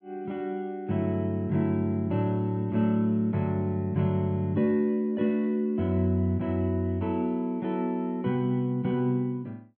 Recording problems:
none

